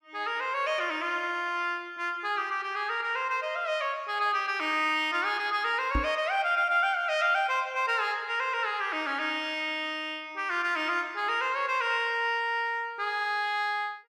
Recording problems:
knock on the microphone; at 6 s; peak +1 dB vs average level

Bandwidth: 14.5 kHz